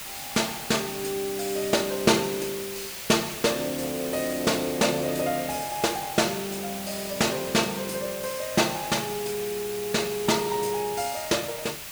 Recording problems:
hiss; slope +1 dB per octave, SNR 8 dB

